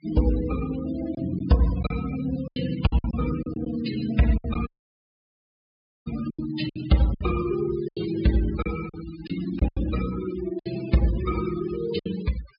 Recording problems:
treble missing; nothing above 5.5 kHz
noise reduction artefacts; signal-to-artefact ratio 13 dB
lost packets; 9% of the sound replaced, filled with silence
dropout; at 4.5 s for 1.5 s

